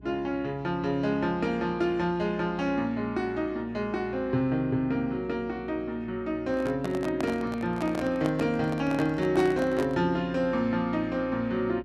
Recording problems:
hum; 60 Hz, harmonics up to 420 Hz, SNR 21 dB
handling noise; from 6.5 to 10 s; peak -1 dB vs average level

